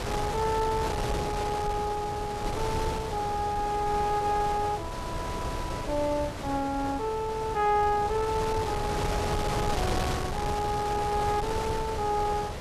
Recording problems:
wind on the microphone; below 990 Hz, SNR 4 dB

